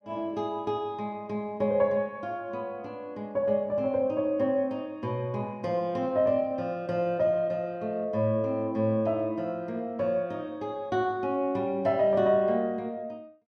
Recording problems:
none

